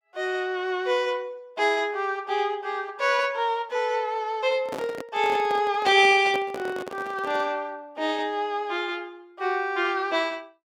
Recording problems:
handling noise; from 4.5 to 7.5 s; peak -4 dB vs average level

